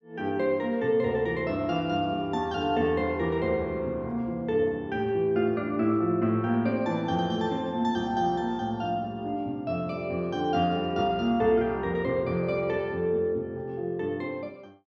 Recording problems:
none

